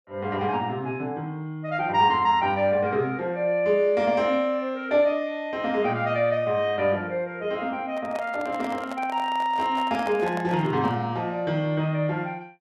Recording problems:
microphone handling noise; from 8 to 11 s; peak -5 dB vs average level

